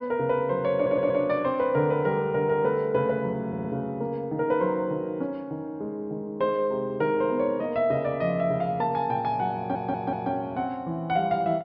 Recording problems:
treble cut off; nothing above 5.5 kHz
stutter; at 1 s, at 3.5 s and at 9.5 s

